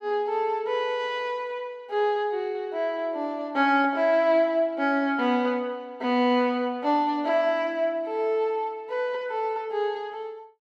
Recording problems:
none

